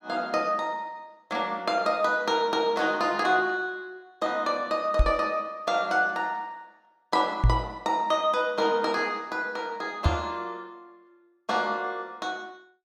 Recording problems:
knock on the microphone; at 5 s, at 7.5 s and at 10 s; peak +9 dB vs average level

